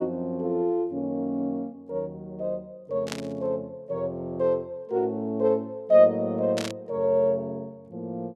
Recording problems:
burst of static; at 3 s and at 6.5 s; peak -2 dB vs average level

